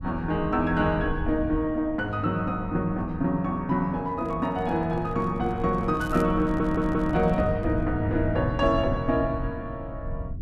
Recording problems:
rumble; below 110 Hz, SNR 10 dB
microphone handling noise; from 4 to 8 s; peak -10 dB vs average level
crackling; at 6 s; loose cable, SNR 23 dB
audio stuttering; at 6.5 s

